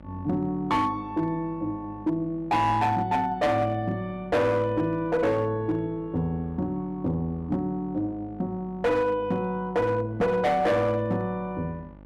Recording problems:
distorted audio; hard clipping, uneven, signal-to-distortion ratio 10 dB
hum; 50 Hz, harmonics up to 1.2 kHz, SNR 21 dB

